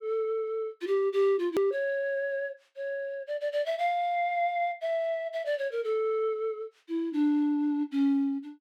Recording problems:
edit click; at 1.5 s

